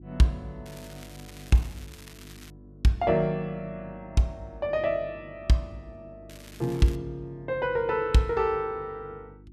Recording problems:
electrical hum; 50 Hz, harmonics up to 350 Hz, SNR 21 dB
crackle; from 0.5 to 2.5 s and at 6.5 s; loose cable, SNR 21 dB

